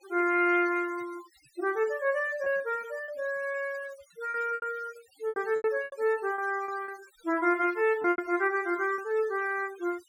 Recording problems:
noise reduction artefacts; signal-to-artefact ratio 21 dB
lost packets; 8% of the sound replaced, filled with repeated pitch periods

